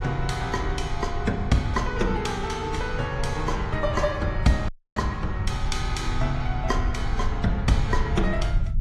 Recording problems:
codec artefacts; AAC, log-spectral distance 2 dB
low-frequency rumble; below 82 Hz, SNR 3 dB
dropout; at 4.5 s

